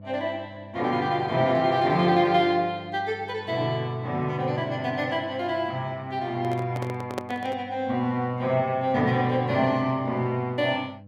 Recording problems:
hum; 50 Hz, harmonics up to 600 Hz, SNR 20 dB
handling noise; from 6.5 to 7.5 s; peak -1 dB vs average level

